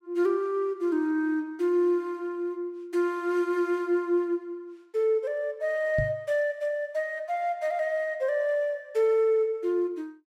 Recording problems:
microphone thump; at 6 s; peak 0 dB vs average level

